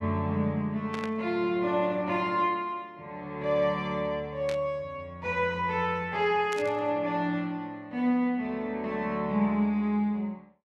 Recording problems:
burst of static; at 1 s, at 4.5 s and at 6.5 s; peak -6 dB vs average level

